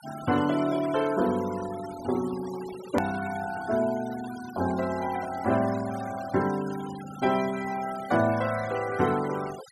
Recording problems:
noise reduction artefacts; signal-to-artefact ratio 15 dB
edit click; at 3 s

